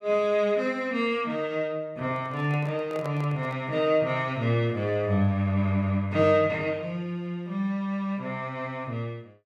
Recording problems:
handling noise; from 2 to 3.5 s; peak -7 dB vs average level

